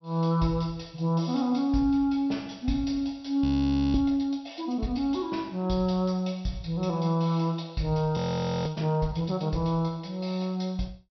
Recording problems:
treble missing; nothing above 5.8 kHz
frozen audio; at 3.5 s for 0.5 s and at 8 s

